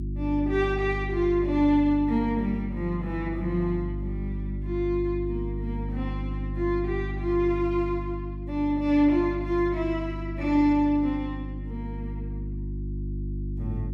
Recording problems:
mains hum; 50 Hz, harmonics up to 350 Hz, SNR 7 dB

